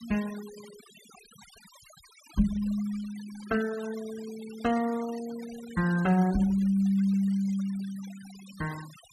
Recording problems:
noise reduction artefacts; signal-to-artefact ratio 19 dB

